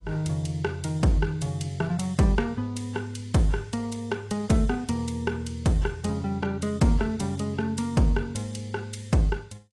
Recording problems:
codec artefacts; AAC, log-spectral distance 2 dB, nothing above 10.7 kHz

